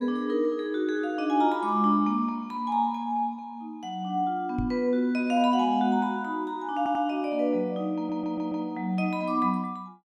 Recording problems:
microphone bump; at 4.5 s; peak -2 dB vs average level
audio stuttering; at 7 s and at 8 s

